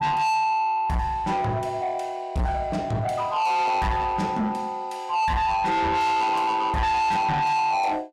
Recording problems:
distortion; soft clipping, signal-to-distortion ratio 7 dB

